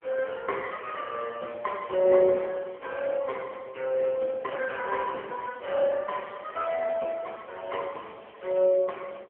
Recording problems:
telephone audio; 300 Hz to 3.1 kHz, AMR-NB

